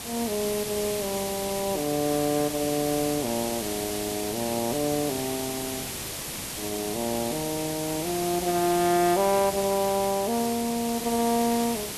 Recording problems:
hiss; SNR 5 dB

